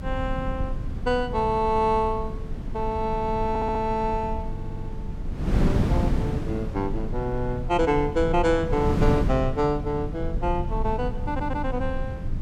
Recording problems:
rumble; below 76 Hz, strongest tone 24 Hz, SNR 8 dB
wind on the microphone; below 240 Hz, SNR 6 dB
stutter; at 3.5 s, at 4.5 s and at 11 s

